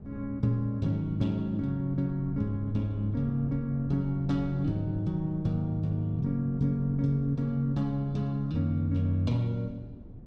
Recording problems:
wind noise; below 200 Hz, SNR 15 dB

